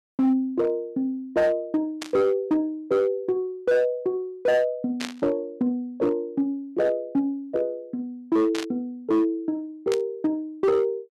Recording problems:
distortion; hard clipping, signal-to-distortion ratio 12 dB
static burst; 4 times, first at 2 s; peak -2 dB vs average level

